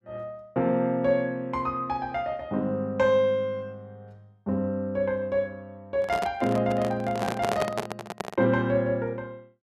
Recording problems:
microphone handling noise; from 6 to 8.5 s; peak +2 dB vs average level

